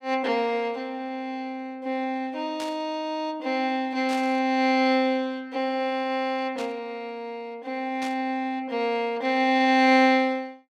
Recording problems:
static burst; 4 times, first at 2.5 s; peak -8 dB vs average level

